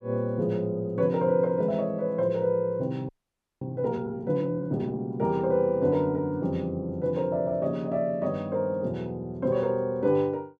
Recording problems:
frozen audio; at 3 s for 0.5 s

